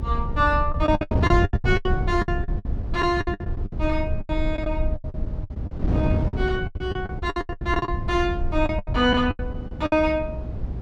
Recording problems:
rumble; below 80 Hz, SNR 5 dB
wind on the microphone; below 220 Hz, SNR 6 dB
lost packets; 20% of the sound replaced, filled with the last packet

